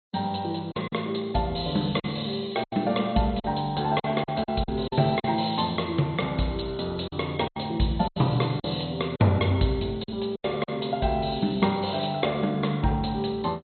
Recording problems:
lossy codec; MP2, log-spectral distance 8 dB, nothing above 4.2 kHz
lost packets; 7% of the sound replaced, filled with silence

